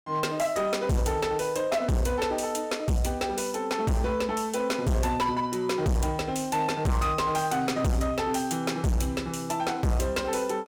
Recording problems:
distorted audio; hard clipping, signal-to-distortion ratio 6 dB

